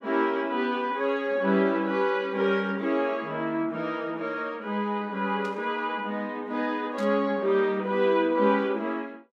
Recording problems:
burst of static; at 5.5 s and at 7 s; peak -13 dB vs average level

